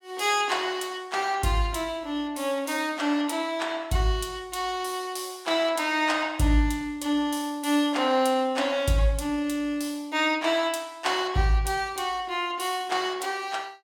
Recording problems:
none

